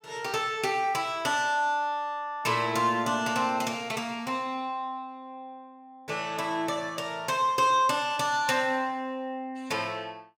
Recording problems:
none

